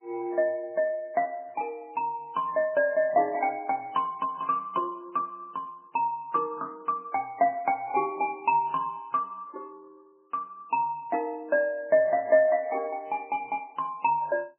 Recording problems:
codec artefacts; MP3, log-spectral distance 2 dB, nothing above 2.7 kHz

